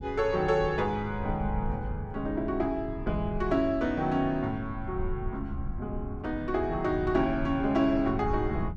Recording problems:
rumble; below 110 Hz, SNR 10 dB

